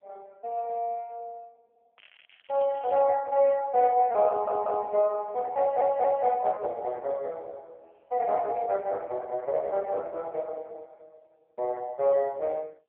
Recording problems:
telephone audio; 320 Hz to 2.8 kHz, AMR-NB
crackling; from 2 to 3 s; loose cable, SNR 27 dB
audio stuttering; at 4.5 s and at 5.5 s

